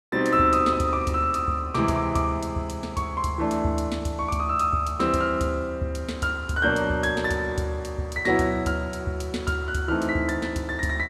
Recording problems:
none

